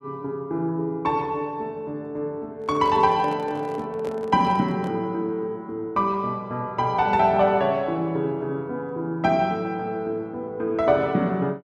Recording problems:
handling noise; from 2.5 to 5 s; peak -9 dB vs average level

